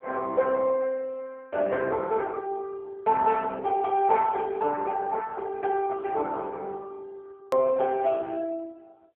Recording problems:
telephone audio; 340 Hz to 3.1 kHz, AMR-NB
click at an edit; at 7.5 s

